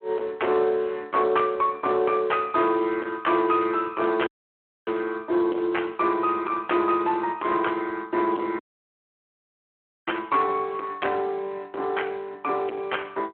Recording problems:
phone line; 260 Hz to 3.4 kHz, Speex
distorted audio; soft clipping, signal-to-distortion ratio 10 dB
dropout; at 4.5 s for 0.5 s and at 8.5 s for 1.5 s

